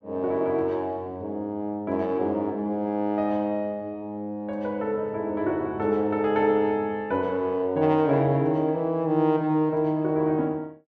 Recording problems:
none

